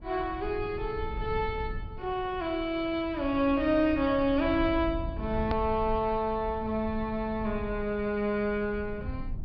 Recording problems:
low-pass filter; nothing above 5.5 kHz
rumble; below 100 Hz, SNR 11 dB
edit click; at 5.5 s

